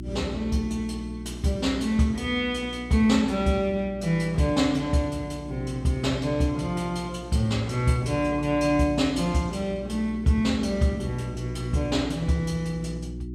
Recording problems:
electrical hum; 60 Hz, harmonics up to 360 Hz, SNR 13 dB

